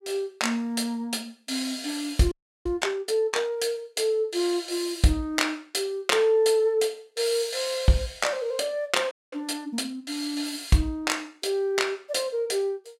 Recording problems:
audio freezing; at 2.5 s and at 9 s

